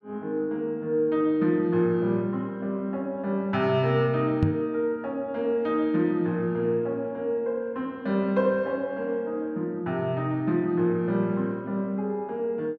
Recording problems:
knock on the microphone; at 4.5 s; peak +6 dB vs average level

